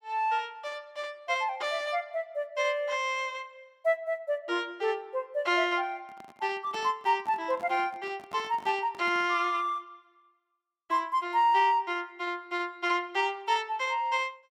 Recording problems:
microphone handling noise; from 6 to 9.5 s; peak -12 dB vs average level

